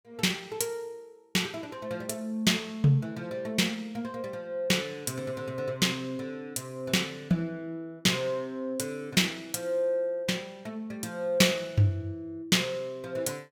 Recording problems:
none

